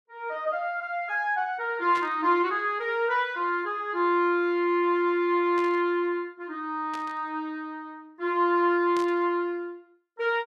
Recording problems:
static burst; 4 times, first at 2 s; peak -9 dB vs average level

